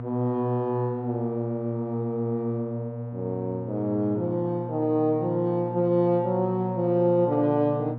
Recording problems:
hum; 60 Hz, harmonics up to 960 Hz, SNR 8 dB

